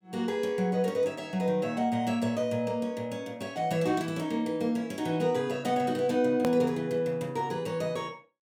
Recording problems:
edit click; at 6.5 s

